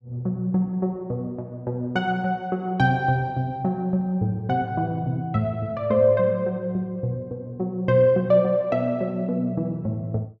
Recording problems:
none

